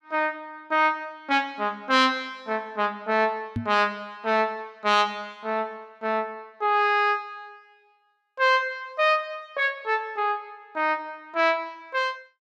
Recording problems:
knock on the microphone; at 3.5 s; peak 0 dB vs average level

